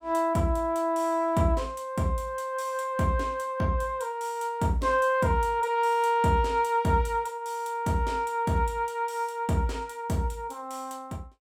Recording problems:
none

